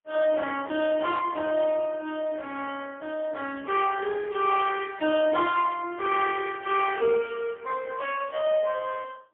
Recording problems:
telephone audio; 370 Hz to 3.4 kHz, AMR-NB, then MP3

